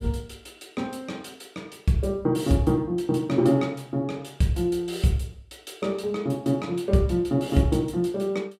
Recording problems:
none

